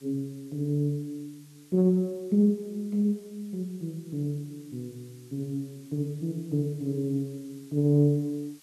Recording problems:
background hiss; slope +1 dB per octave, SNR 27 dB

